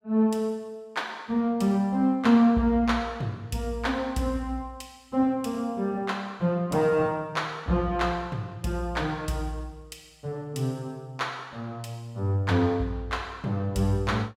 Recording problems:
none

